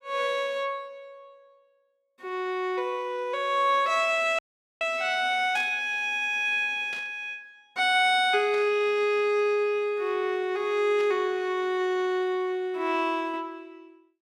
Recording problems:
dropout; at 4.5 s
burst of static; 4 times, first at 5.5 s; peak -11 dB vs average level

